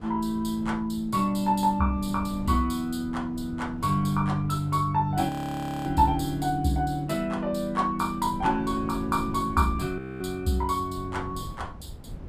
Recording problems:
wind on the microphone; below 180 Hz, SNR 15 dB
frozen audio; at 5.5 s for 0.5 s and at 10 s

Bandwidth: 15 kHz